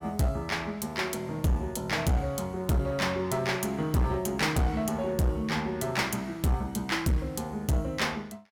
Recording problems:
distortion; hard clipping, uneven, signal-to-distortion ratio 9 dB

